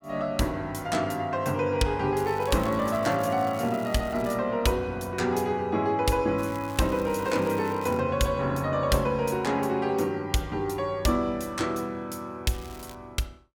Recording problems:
crackling; from 2 to 4.5 s, from 6.5 to 8 s and at 13 s; loose cable, SNR 21 dB

